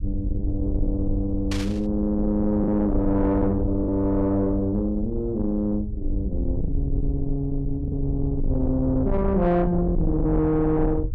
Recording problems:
distorted audio; soft clipping, signal-to-distortion ratio 10 dB
low-frequency rumble; below 82 Hz, SNR 6 dB
packet loss; 1.8% of the sound replaced, filled with the last packet
burst of static; at 1.5 s; peak -4 dB vs average level

